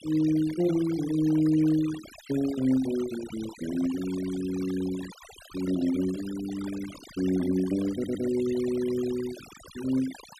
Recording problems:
denoising artefacts; signal-to-artefact ratio 16 dB
audio stuttering; at 8 s

